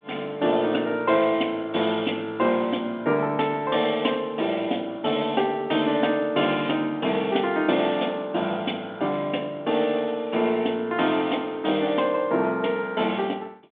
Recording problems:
phone line; 150 Hz to 3.6 kHz, G.726

